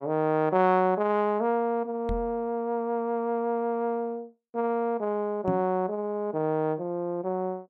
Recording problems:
microphone bump; at 2 s and at 5.5 s; peak 0 dB vs average level

